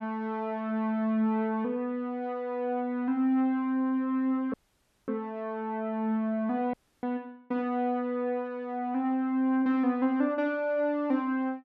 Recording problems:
dropout; at 4.5 s for 0.5 s and at 6.5 s

